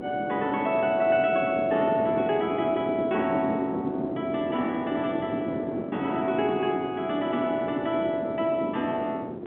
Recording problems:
telephone audio; 240 Hz to 3.5 kHz, G.711
wind noise; below 430 Hz, SNR 6 dB

